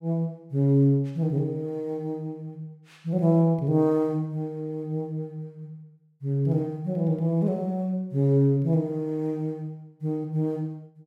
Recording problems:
none

